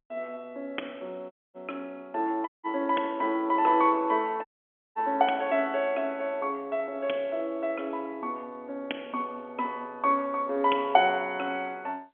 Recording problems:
phone line; 220 Hz to 3.4 kHz, G.711
audio cutting out; at 1.5 s, at 2.5 s and at 4.5 s for 0.5 s

